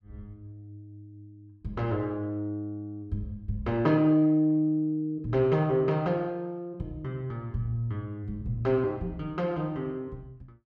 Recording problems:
none

